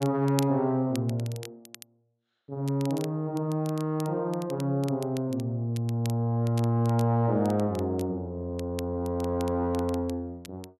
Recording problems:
crackle; vinyl, SNR 19 dB

